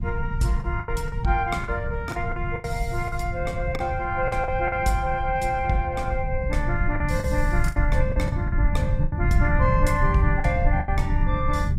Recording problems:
lossy compression; Opus, log-spectral distance 2 dB, nothing above 16 kHz
low-frequency rumble; below 120 Hz, SNR 0 dB
packet loss; 9% of the sound replaced, filled with the last packet

